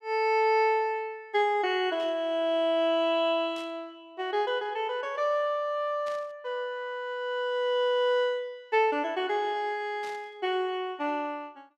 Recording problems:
burst of static; 4 times, first at 2 s; peak -14 dB vs average level

